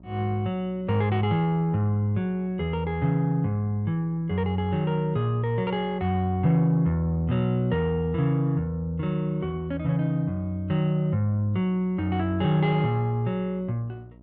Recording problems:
electrical hum; 60 Hz, harmonics up to 720 Hz, SNR 26 dB

